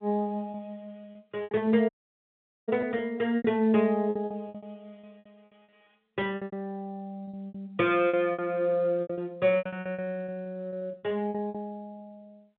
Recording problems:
phone line; 130 Hz to 3.8 kHz, G.711
packet loss; 15% of the sound replaced, filled with repeated pitch periods
dropout; at 2 s for 1 s

